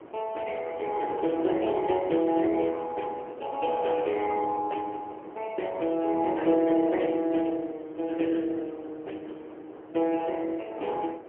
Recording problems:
telephone audio; 260 Hz to 3.3 kHz, AMR-NB, then MP3
wind on the microphone; below 680 Hz, SNR 15 dB

